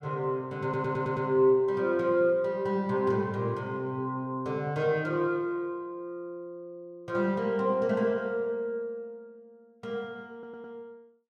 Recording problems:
stutter; at 0.5 s and at 10 s

